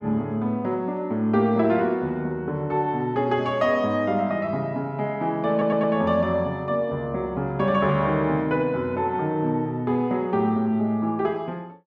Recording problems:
audio stuttering; at 5.5 s

